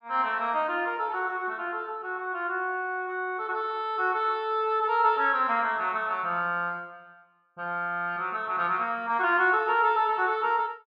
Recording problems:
none

